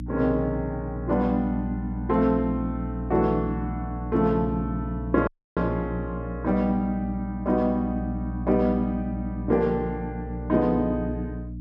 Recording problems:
hum; 60 Hz, harmonics up to 300 Hz, SNR 7 dB
dropout; at 5.5 s

